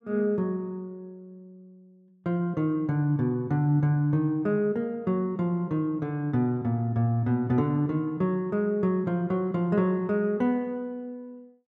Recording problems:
none

